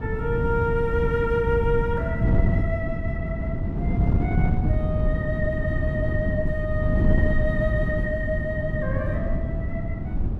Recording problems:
wind on the microphone; below 170 Hz, SNR -3 dB

